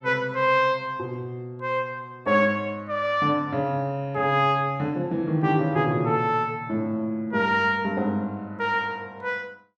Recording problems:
none

